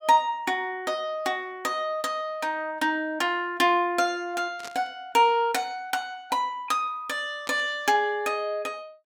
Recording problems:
static burst; at 4.5 s and at 7.5 s; peak -9 dB vs average level

